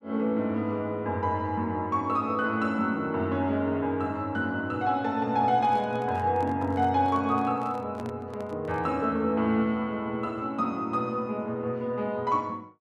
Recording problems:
microphone handling noise; from 5.5 to 9 s; peak -11 dB vs average level

